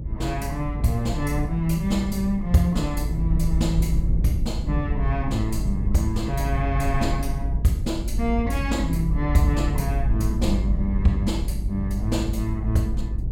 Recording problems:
rumble; below 78 Hz, strongest tone 52 Hz, SNR 1 dB

